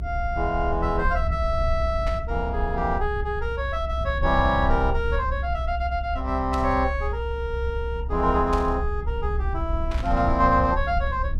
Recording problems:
low-frequency rumble; below 66 Hz, SNR 4 dB
static burst; 4 times, first at 2 s; peak -8 dB vs average level

